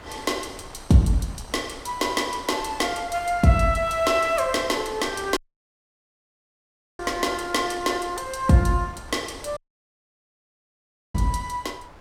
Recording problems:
wind on the microphone; below 1.2 kHz, SNR 19 dB
dropout; at 5.5 s for 1.5 s and at 9.5 s for 1.5 s

